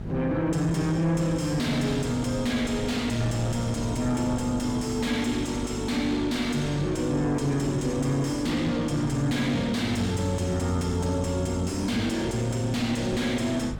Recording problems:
distortion; soft clipping, signal-to-distortion ratio 7 dB
hum; 50 Hz, harmonics up to 650 Hz, SNR 11 dB
wind on the microphone; below 200 Hz, SNR 16 dB

